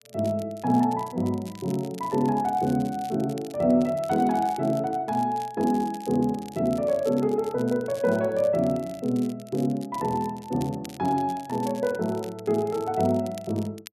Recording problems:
crackle; vinyl, SNR 22 dB

